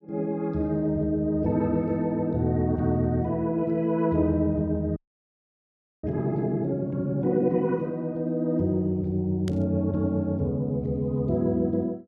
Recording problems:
frozen audio; at 5 s for 1 s
static burst; at 9.5 s; peak -11 dB vs average level

